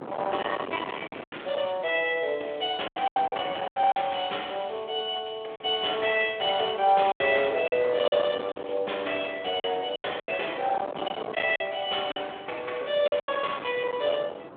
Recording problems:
telephone audio; 320 Hz to 3.6 kHz, Speex
distorted audio; hard clipping, signal-to-distortion ratio 9 dB
wind on the microphone; below 1.2 kHz, SNR 11 dB
packet loss; 8% of the sound replaced, filled with silence

